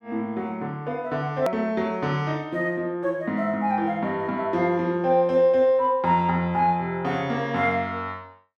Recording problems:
edit click; at 1.5 s

